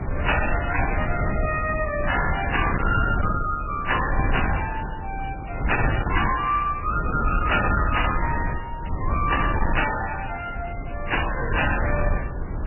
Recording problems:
lossy compression; MP3, log-spectral distance 7 dB, nothing above 2.9 kHz
distortion; hard clipping, signal-to-distortion ratio 10 dB
wind noise; below 220 Hz, SNR 3 dB

